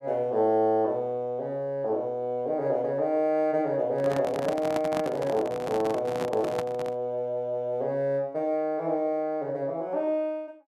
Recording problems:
microphone handling noise; from 4 to 7 s; peak -1 dB vs average level

